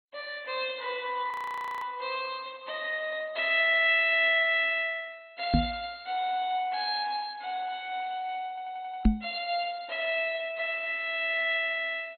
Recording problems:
lossy codec; MP2, log-spectral distance 4 dB, nothing above 4.2 kHz
frozen audio; at 1.5 s for 0.5 s
microphone bump; at 5.5 s and at 9 s; peak +10 dB vs average level
audio stuttering; at 8.5 s

